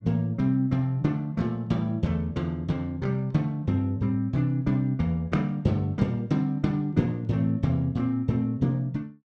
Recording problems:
none

